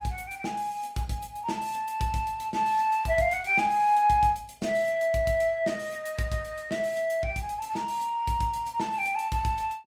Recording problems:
lossy codec; Opus, log-spectral distance 3 dB

